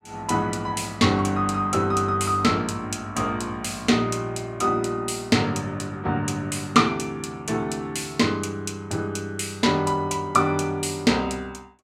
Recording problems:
none

